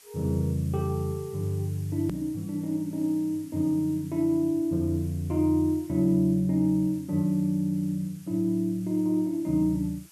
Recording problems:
background hiss; slope +2 dB per octave, SNR 25 dB
hard cut with a click; at 2 s

